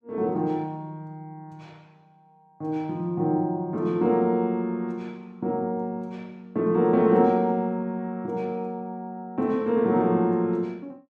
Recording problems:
none

